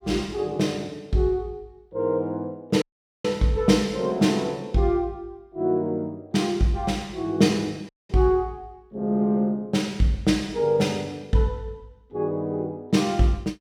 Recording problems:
dropout; at 3 s and at 8 s

